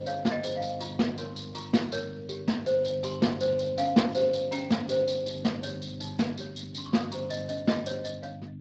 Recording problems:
lossy compression; Speex, then Speex, log-spectral distance 6 dB, nothing above 7.3 kHz
hum; 50 Hz, harmonics up to 300 Hz, SNR 12 dB

